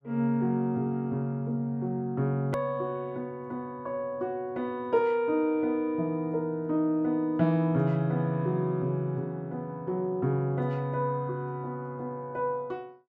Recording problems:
click at an edit; at 2.5 s

